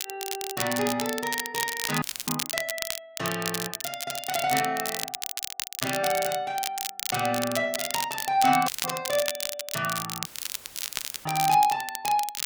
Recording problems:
crackle; vinyl, SNR 3 dB
audio cutting out; at 2 s, at 8.5 s and at 10 s for 1 s; filled with static

